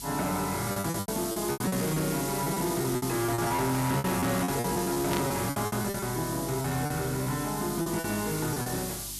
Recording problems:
distortion; hard clipping, signal-to-distortion ratio 10 dB
hum; 50 Hz, harmonics up to 350 Hz, SNR 20 dB
background hiss; SNR 6 dB
lost packets; 14% of the sound replaced, filled with repeated pitch periods
burst of static; at 5 s; peak -2 dB vs average level

